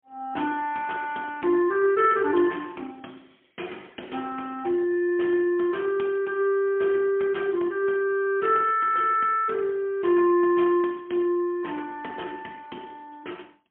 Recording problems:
phone line; 260 Hz to 3.3 kHz, AMR-NB, then MP3

